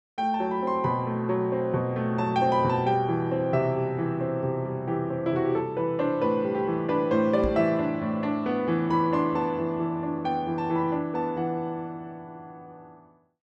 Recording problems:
knock on the microphone; at 7.5 s; peak +1 dB vs average level

